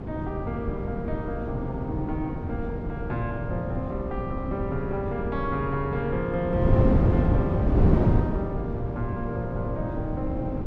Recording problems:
wind on the microphone; below 260 Hz, SNR -3 dB

